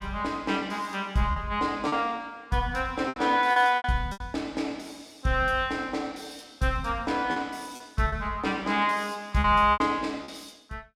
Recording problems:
lost packets; 6% of the sound replaced, filled with repeated pitch periods

